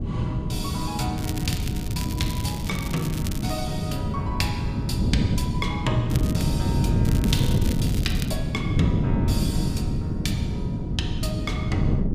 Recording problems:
wind noise; below 210 Hz, SNR -5 dB
crackling; from 1 to 3.5 s, at 6 s and from 7 to 8.5 s; loose cable, SNR 7 dB

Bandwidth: 15 kHz